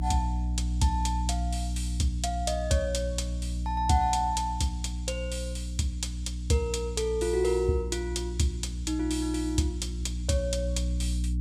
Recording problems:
mains hum; 60 Hz, harmonics up to 300 Hz, SNR 3 dB

